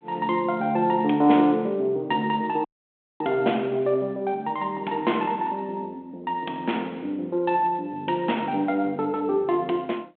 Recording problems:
phone line; 240 Hz to 3.6 kHz, G.726
dropout; at 2.5 s for 0.5 s

